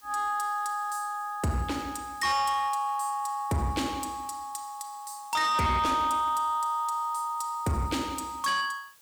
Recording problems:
distortion; soft clipping, signal-to-distortion ratio 12 dB
background hiss; slope +1 dB per octave, SNR 26 dB

